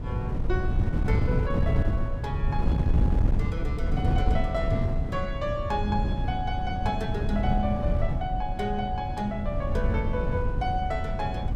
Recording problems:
wind noise; below 130 Hz, SNR -3 dB

